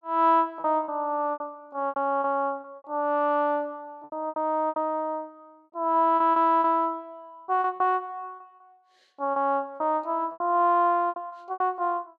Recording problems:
lost packets; 12% of the sound replaced, filled with repeated pitch periods

